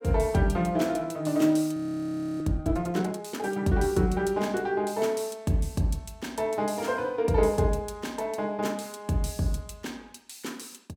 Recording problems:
audio freezing; at 2 s for 0.5 s

